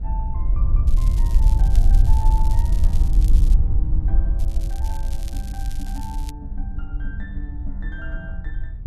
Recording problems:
wind on the microphone; below 56 Hz, SNR -16 dB
crackling; from 1 to 3.5 s and from 4.5 to 6.5 s; loose cable, SNR 6 dB

